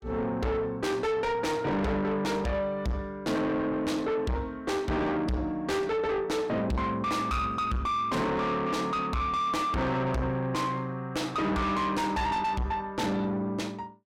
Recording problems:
distortion; soft clipping, signal-to-distortion ratio 6 dB

